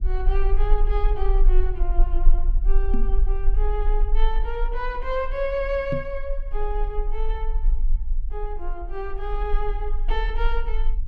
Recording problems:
rumble; below 34 Hz, strongest tone 22 Hz, SNR -4 dB
knock on the microphone; at 3 s and at 6 s; peak +7 dB vs average level

